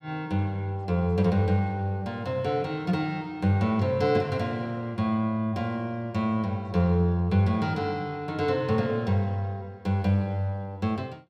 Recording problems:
none

